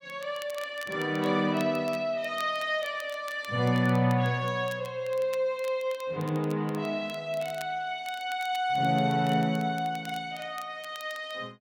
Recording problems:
crackle; vinyl, SNR 21 dB

